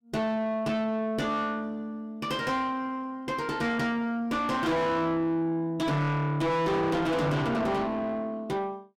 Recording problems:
distorted audio; soft clipping, signal-to-distortion ratio 5 dB

